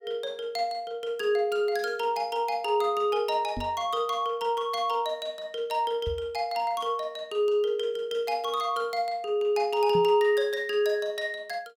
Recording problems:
knock on the microphone; at 3.5 s, at 6 s and at 10 s; peak -3 dB vs average level

